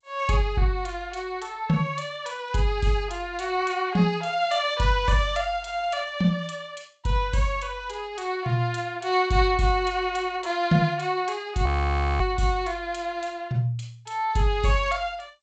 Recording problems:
lossy compression; G.722, log-spectral distance 2 dB, nothing above 7.6 kHz
frozen audio; at 12 s for 0.5 s

